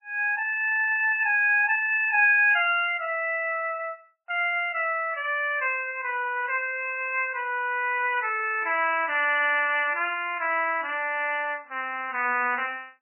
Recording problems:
lossy compression; MP3, log-spectral distance 3 dB, nothing above 2.4 kHz

